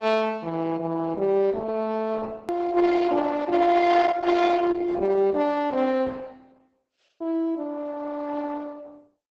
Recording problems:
lossy codec; Opus, log-spectral distance 3 dB, nothing above 13.1 kHz
edit click; at 2.5 s

